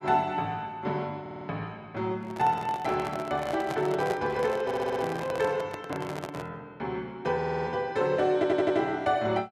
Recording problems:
stutter; 4 times, first at 1 s
microphone handling noise; from 2 to 6.5 s; peak -1 dB vs average level

